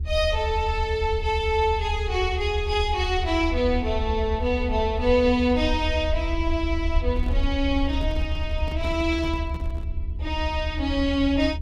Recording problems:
mains hum; 60 Hz, harmonics up to 420 Hz, SNR 17 dB
low-frequency rumble; below 76 Hz, SNR 5 dB
handling noise; from 7 to 10 s; peak -8 dB vs average level

